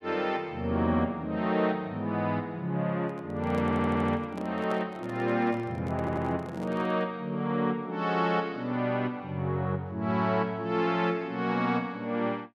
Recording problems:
handling noise; from 3 to 7 s; peak -7 dB vs average level
stutter; at 3.5 s and at 6 s

